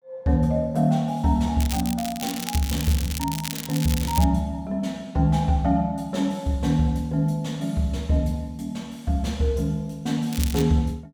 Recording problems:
crackling; from 1.5 to 4 s and at 10 s; loose cable, SNR 9 dB

